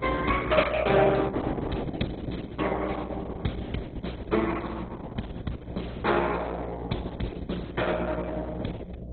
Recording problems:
codec artefacts; Opus, then MP2, log-spectral distance 4 dB, nothing above 4 kHz
electrical hum; 60 Hz, harmonics up to 660 Hz, SNR 11 dB

